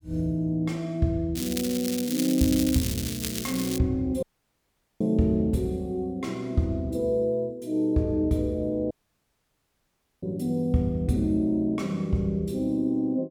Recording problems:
crackling; from 1.5 to 4 s; loose cable, SNR 6 dB
dropout; at 4 s for 1 s and at 9 s for 1.5 s

